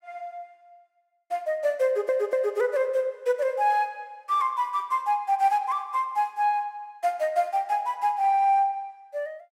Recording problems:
stutter; at 2 s

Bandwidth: 16 kHz